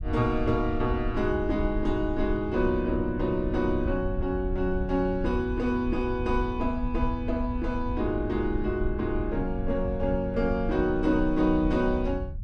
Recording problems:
rumble; below 78 Hz, SNR 7 dB

